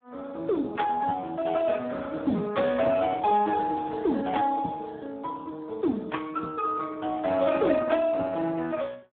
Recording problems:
telephone audio; 150 Hz to 2 kHz, Speex

